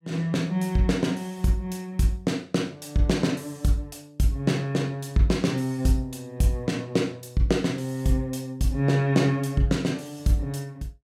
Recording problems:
none

